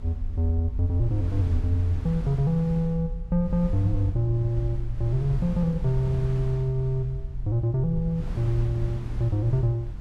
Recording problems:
low-frequency rumble; below 56 Hz, SNR 10 dB
wind noise; below 140 Hz, SNR 12 dB

